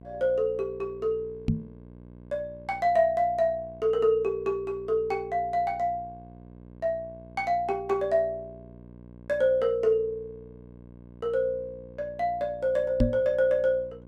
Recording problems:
hum; 60 Hz, harmonics up to 1.1 kHz, SNR 20 dB
microphone thump; at 1.5 s and at 13 s; peak +7 dB vs average level

